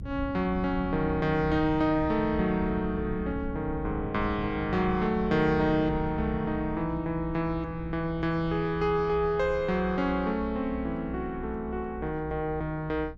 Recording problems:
rumble; below 130 Hz, SNR 11 dB

